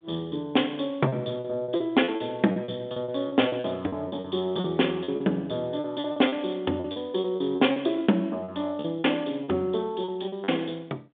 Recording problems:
phone line; 190 Hz to 3.6 kHz, G.726
lost packets; 13% of the sound replaced, filled with repeated pitch periods

